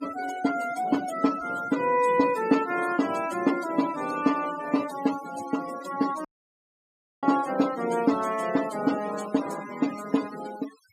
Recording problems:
denoising artefacts; signal-to-artefact ratio 14 dB
dropout; at 6.5 s for 1 s

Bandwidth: 15 kHz